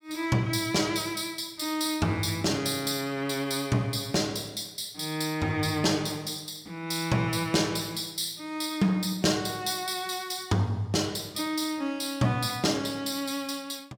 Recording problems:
none

